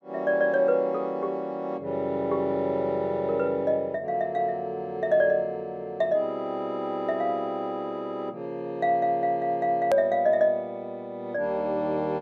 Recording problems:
click at an edit; at 10 s

